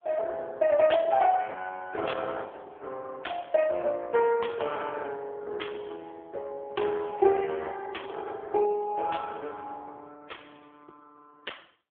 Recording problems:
phone line; 300 Hz to 3.4 kHz, AMR-NB

